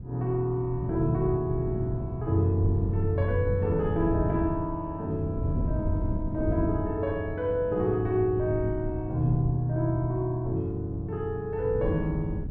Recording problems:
wind noise; below 160 Hz, SNR 6 dB

